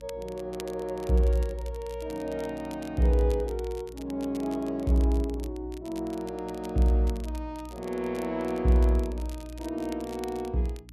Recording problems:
hum; 60 Hz, harmonics up to 300 Hz, SNR 21 dB
crackle; vinyl, SNR 21 dB

